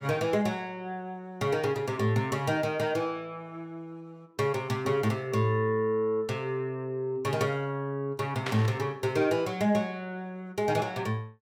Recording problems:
burst of static; at 8.5 s; peak +1 dB vs average level

